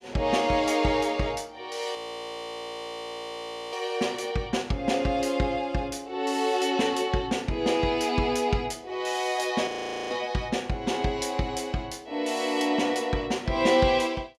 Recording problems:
frozen audio; at 2 s for 2 s and at 9.5 s

